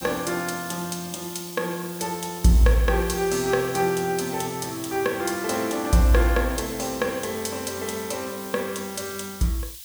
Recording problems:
hiss; SNR 13 dB

